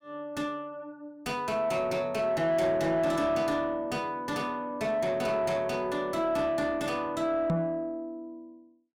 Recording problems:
distortion; soft clipping, signal-to-distortion ratio 11 dB
microphone thump; at 7.5 s; peak +5 dB vs average level

